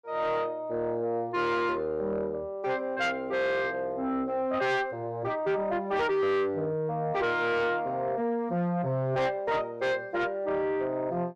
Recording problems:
distortion; soft clipping, signal-to-distortion ratio 10 dB

